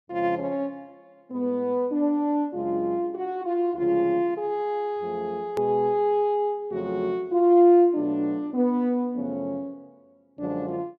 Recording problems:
edit click; at 5.5 s

